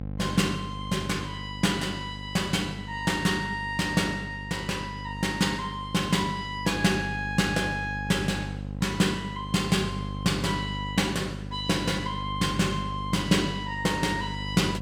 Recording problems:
hum; 50 Hz, harmonics up to 800 Hz, SNR 9 dB

